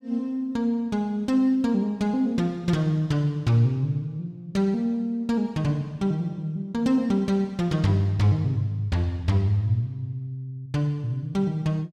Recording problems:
none

